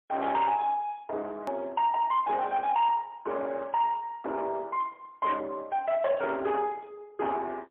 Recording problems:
telephone audio; 300 Hz to 3.8 kHz, AMR-NB, then MP3
distortion; soft clipping, signal-to-distortion ratio 12 dB
hard cut with a click; at 1.5 s

